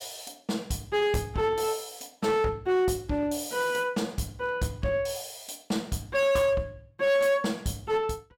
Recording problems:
distorted audio; hard clipping, uneven, signal-to-distortion ratio 10 dB

